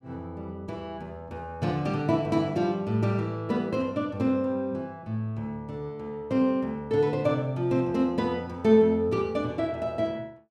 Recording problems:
none

